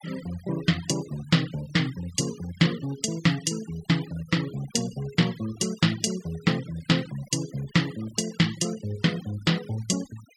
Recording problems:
noise reduction artefacts; signal-to-artefact ratio 18 dB

